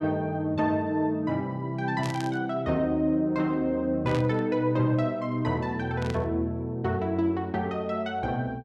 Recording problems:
static burst; at 2 s, at 4 s and at 6 s; peak -6 dB vs average level

